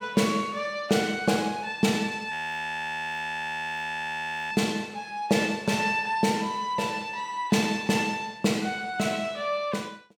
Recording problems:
audio freezing; at 2.5 s for 2 s

